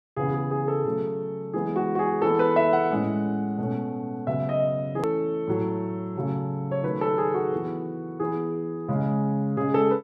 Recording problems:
click at an edit; at 5 s

